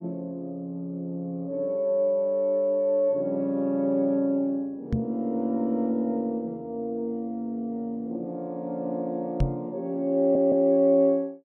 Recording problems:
microphone thump; at 5 s and at 9.5 s; peak +5 dB vs average level
audio stuttering; at 10 s

